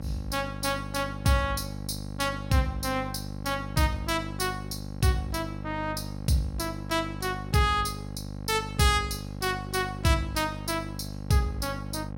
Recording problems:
electrical hum; 50 Hz, harmonics up to 1.1 kHz, SNR 9 dB

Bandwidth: 16.5 kHz